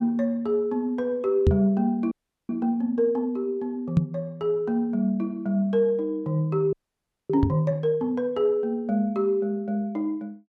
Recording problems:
microphone thump; at 1.5 s, at 4 s and at 7.5 s; peak +8 dB vs average level
audio freezing; at 2 s and at 6.5 s for 0.5 s

